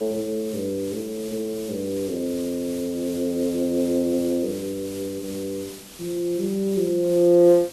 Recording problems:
background hiss; SNR 16 dB

